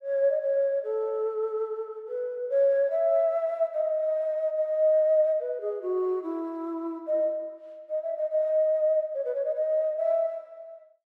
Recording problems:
none

